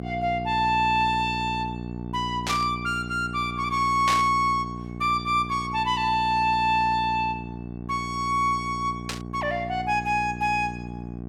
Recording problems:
electrical hum; 60 Hz, harmonics up to 840 Hz, SNR 10 dB
burst of static; at 2.5 s, at 4 s and at 9 s; peak +1 dB vs average level

